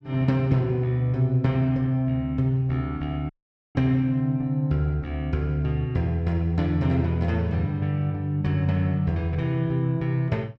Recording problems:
audio cutting out; at 3.5 s

